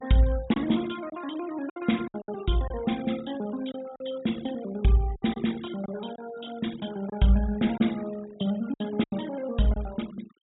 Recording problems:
treble missing; nothing above 4 kHz
denoising artefacts; signal-to-artefact ratio 18 dB
lost packets; 6% of the sound replaced, filled with silence

